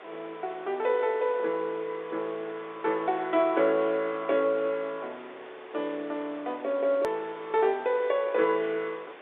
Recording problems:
phone line; 300 Hz to 3.8 kHz, G.711
hiss; SNR 18 dB
edit click; at 7 s

